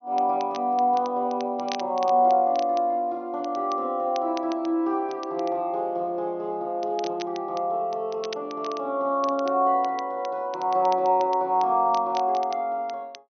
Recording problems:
low-pass filter; nothing above 6.2 kHz
crackle; vinyl, SNR 20 dB

